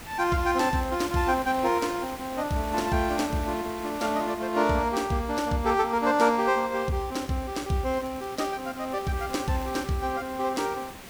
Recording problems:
hiss; slope -3 dB per octave, SNR 15 dB
crackle; from 0.5 to 3 s and from 8 to 10 s; loose cable, SNR 28 dB

